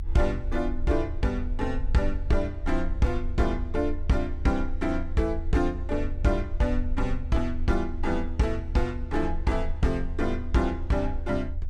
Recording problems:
low-frequency rumble; below 74 Hz, strongest tone 20 Hz, SNR 6 dB

